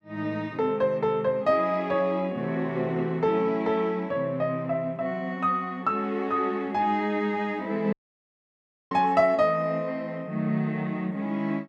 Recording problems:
audio cutting out; at 8 s for 1 s

